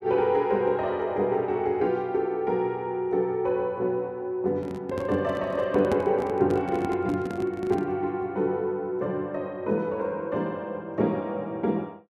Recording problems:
microphone handling noise; from 4.5 to 8 s; peak +1 dB vs average level

